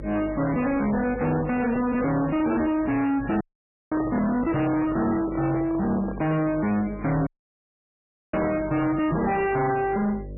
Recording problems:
lossy codec; MP3, log-spectral distance 3 dB, nothing above 2.6 kHz
distortion; soft clipping, signal-to-distortion ratio 6 dB
hum; 50 Hz, harmonics up to 600 Hz, SNR 16 dB
dropout; at 3.5 s for 0.5 s and at 7.5 s for 1 s
microphone handling noise; from 4 to 6.5 s; peak 0 dB vs average level

